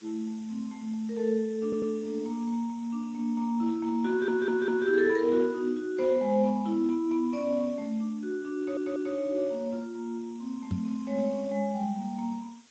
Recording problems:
lossy codec; Speex, log-spectral distance 4 dB
hiss; slope +1 dB per octave, SNR 27 dB
stutter; at 1.5 s, at 4 s and at 8.5 s
knock on the microphone; at 11 s; peak +2 dB vs average level

